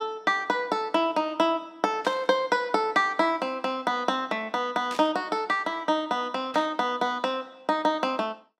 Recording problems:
static burst; at 2 s, at 5 s and at 6.5 s; peak -8 dB vs average level

